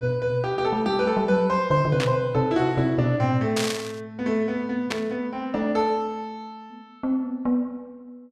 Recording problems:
burst of static; at 2 s, at 3.5 s and at 5 s; peak 0 dB vs average level

